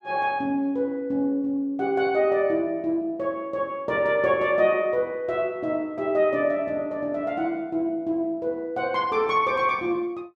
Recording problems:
none

